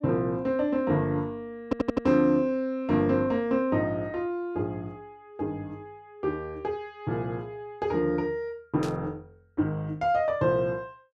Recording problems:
stutter; at 1.5 s
static burst; at 9 s; peak -9 dB vs average level

